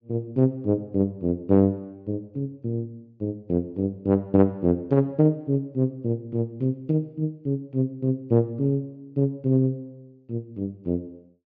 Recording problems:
low-pass filter; nothing above 6.9 kHz

